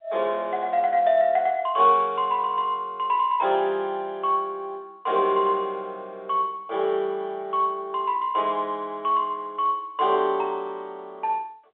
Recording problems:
phone line; 320 Hz to 3.7 kHz, G.711

